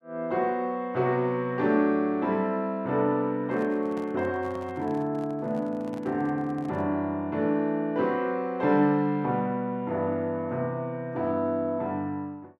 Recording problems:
microphone handling noise; from 3.5 to 7 s; peak -12 dB vs average level

